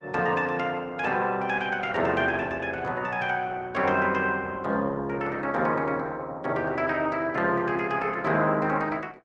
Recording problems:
lossy codec; Opus, log-spectral distance 3 dB

